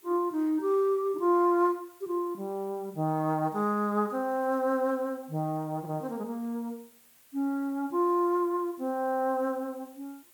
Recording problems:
hiss; slope 0 dB per octave, SNR 27 dB

